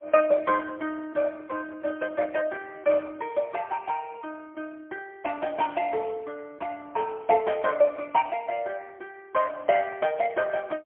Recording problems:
telephone audio; 220 Hz to 3.1 kHz, AMR-NB, then MP3

